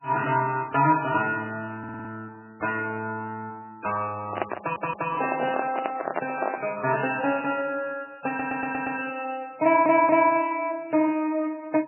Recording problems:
lossy compression; MP3, log-spectral distance 4 dB, nothing above 2.5 kHz
audio stuttering; 4 times, first at 2 s
microphone handling noise; from 4.5 to 6.5 s; peak +3 dB vs average level

